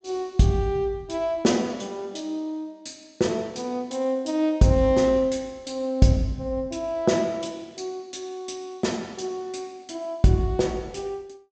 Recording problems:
treble missing; nothing above 8 kHz

